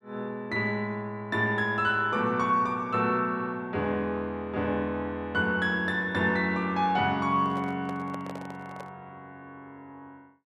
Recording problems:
microphone handling noise; from 7.5 to 9 s; peak -9 dB vs average level

